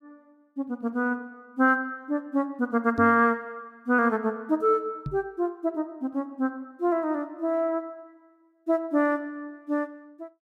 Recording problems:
microphone bump; at 3 s and at 5 s; peak -2 dB vs average level

